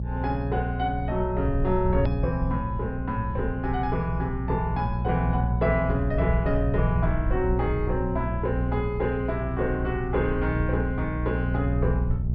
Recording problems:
treble cut off; nothing above 5.5 kHz
mains hum; 60 Hz, harmonics up to 420 Hz, SNR 1 dB
rumble; below 90 Hz, SNR 7 dB
click at an edit; at 2 s

